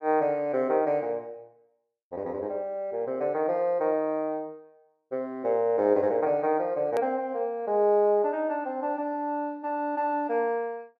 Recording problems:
edit click; at 7 s

